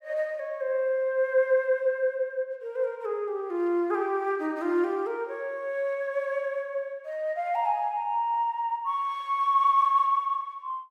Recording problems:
none

